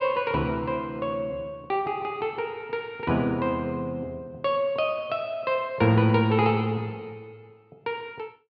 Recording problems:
low-pass filter; nothing above 8 kHz

